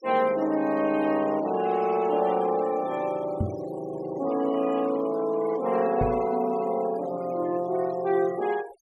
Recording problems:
denoising artefacts; signal-to-artefact ratio 20 dB
knock on the microphone; at 3.5 s and at 6 s; peak +2 dB vs average level

